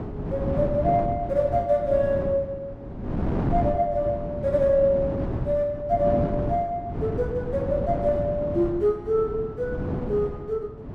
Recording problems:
wind on the microphone; below 330 Hz, SNR 6 dB

